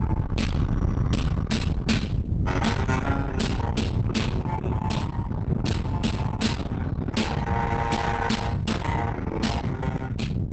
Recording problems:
lossy compression; Opus, log-spectral distance 3 dB, nothing above 8.2 kHz
distorted audio; soft clipping, signal-to-distortion ratio 7 dB
rumble; below 200 Hz, SNR 1 dB
wind on the microphone; below 210 Hz, SNR 1 dB

